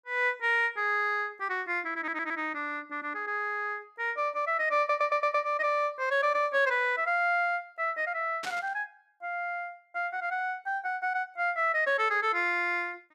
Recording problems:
audio stuttering; at 2 s and at 5 s
burst of static; at 8.5 s; peak -5 dB vs average level

